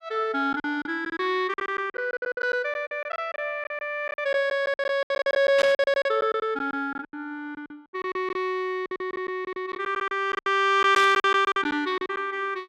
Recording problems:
lost packets; 16% of the sound replaced, filled with silence
static burst; at 5.5 s and at 11 s; peak -1 dB vs average level

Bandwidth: 14.5 kHz